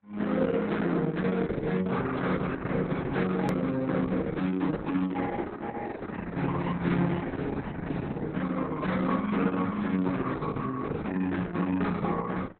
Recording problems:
codec artefacts; AAC, then Opus, log-spectral distance 4 dB, nothing above 13.1 kHz
click at an edit; at 3.5 s

